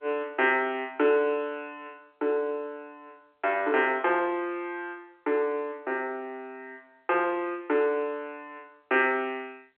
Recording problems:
phone line; 300 Hz to 3.4 kHz, G.711

